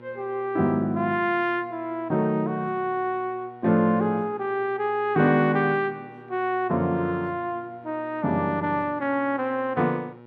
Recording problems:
hum; 60 Hz, harmonics up to 2.4 kHz, SNR 22 dB

